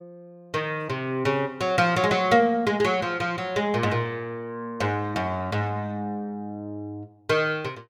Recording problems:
none

